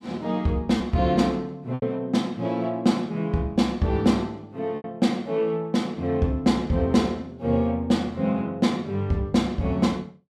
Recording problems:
packet loss; 1.8% of the sound replaced, filled with repeated pitch periods

